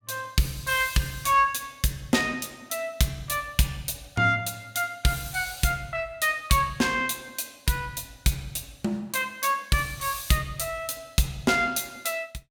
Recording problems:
none

